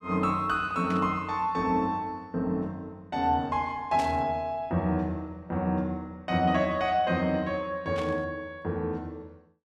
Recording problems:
static burst; at 1 s, at 4 s and at 8 s; peak -8 dB vs average level

